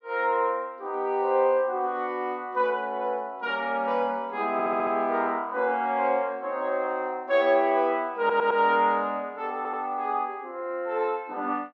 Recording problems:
stutter; at 4.5 s, at 8 s and at 9.5 s

